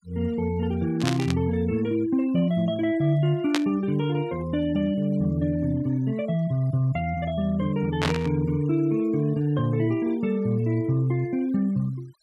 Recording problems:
noise reduction artefacts; signal-to-artefact ratio 24 dB
static burst; at 1 s, at 3.5 s and at 8 s; peak +3 dB vs average level

